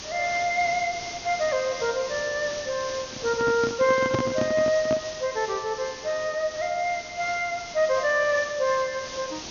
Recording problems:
treble missing; nothing above 6.6 kHz
background hiss; SNR 11 dB
microphone handling noise; from 3 to 5 s; peak +2 dB vs average level

